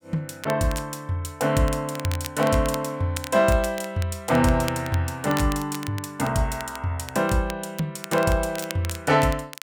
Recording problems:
crackling; vinyl, SNR 14 dB

